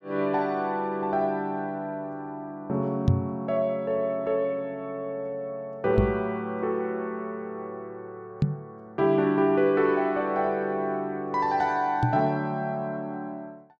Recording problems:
microphone bump; 4 times, first at 3 s; peak +8 dB vs average level

